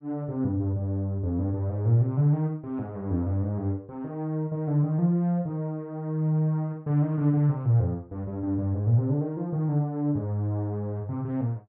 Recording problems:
none

